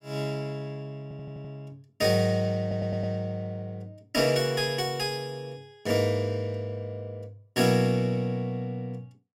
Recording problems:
audio stuttering; at 1 s and at 2.5 s

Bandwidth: 16.5 kHz